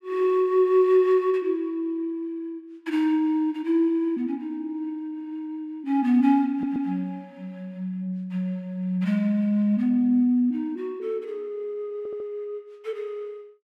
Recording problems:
stutter; at 6.5 s and at 12 s

